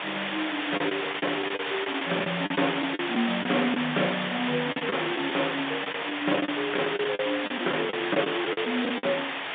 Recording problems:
telephone audio; 240 Hz to 3.6 kHz, G.711
hiss; SNR 1 dB
lost packets; 10% of the sound replaced, filled with the last packet

